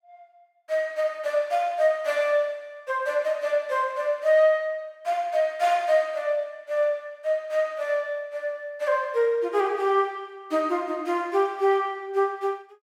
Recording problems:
none

